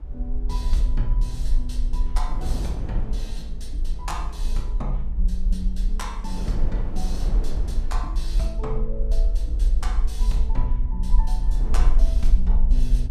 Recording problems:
rumble; below 44 Hz, strongest tone 22 Hz, SNR -9 dB
wind on the microphone; below 240 Hz, SNR 4 dB

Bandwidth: 14.5 kHz